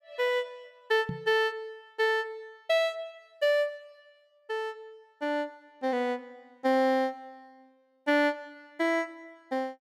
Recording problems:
microphone bump; at 1 s; peak -2 dB vs average level

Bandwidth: 16.5 kHz